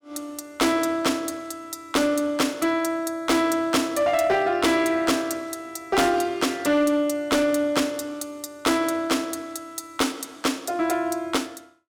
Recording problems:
distortion; hard clipping, signal-to-distortion ratio 12 dB

